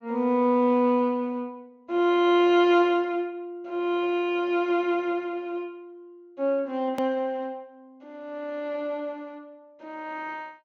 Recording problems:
treble missing; nothing above 7.2 kHz
hard cut with a click; at 7 s

